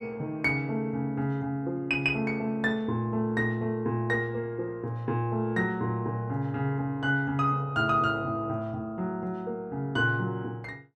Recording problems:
none

